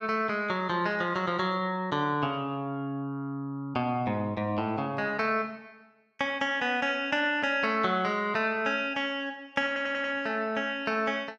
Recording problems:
audio stuttering; at 9.5 s

